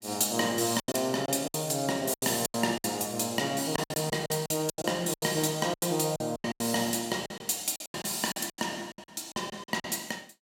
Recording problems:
lost packets; 16% of the sound replaced, filled with silence

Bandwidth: 16 kHz